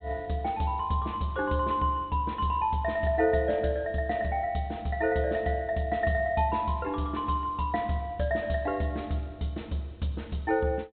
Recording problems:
low-pass filter; nothing above 4 kHz

